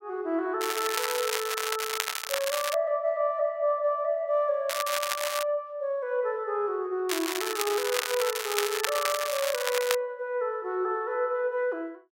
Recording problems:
crackle; from 0.5 to 2.5 s, at 4.5 s and from 7 to 10 s; loose cable, SNR 2 dB

